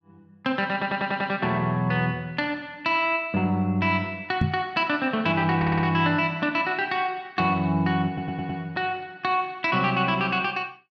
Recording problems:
stutter; at 0.5 s, at 5.5 s and at 8 s
microphone thump; at 4.5 s; peak +5 dB vs average level

